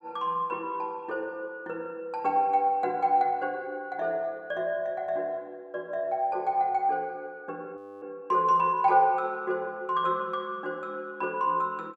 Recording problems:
audio freezing; at 8 s

